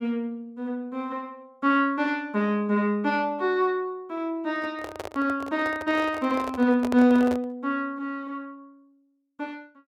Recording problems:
handling noise; from 4.5 to 7.5 s; peak -2 dB vs average level

